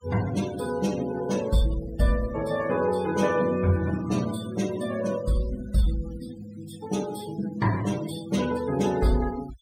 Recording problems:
noise reduction artefacts; signal-to-artefact ratio 16 dB

